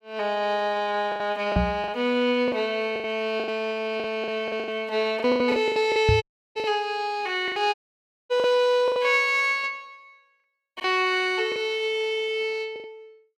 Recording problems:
packet loss; 11% of the sound replaced, filled with the last packet
microphone thump; at 1.5 s and at 6 s; peak +5 dB vs average level
audio cutting out; at 6 s and at 7.5 s for 0.5 s

